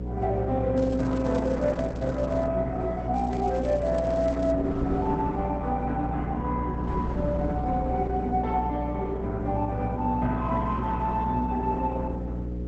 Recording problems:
lossy codec; Opus, log-spectral distance 2 dB, nothing above 7.8 kHz
electrical hum; 60 Hz, harmonics up to 540 Hz, SNR 6 dB
wind noise; below 300 Hz, SNR 13 dB
crackling; from 1 to 2.5 s and from 3 to 4.5 s; loose cable, SNR 25 dB

